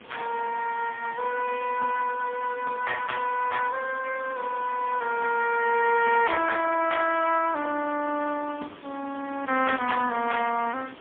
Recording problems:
telephone audio; 190 Hz to 2.7 kHz, AMR-NB, then MP3
background hiss; SNR 21 dB

